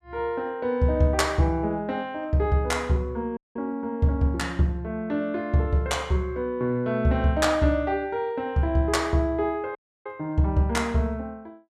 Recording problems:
audio cutting out; at 3.5 s and at 10 s

